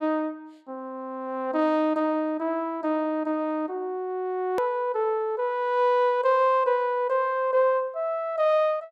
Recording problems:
edit click; at 4.5 s

